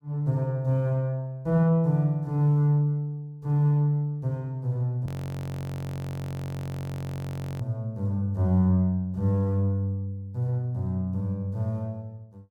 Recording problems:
frozen audio; at 5 s for 2.5 s

